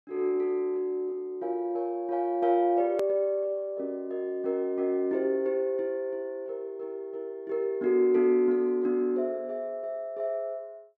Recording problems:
hard cut with a click; at 3 s

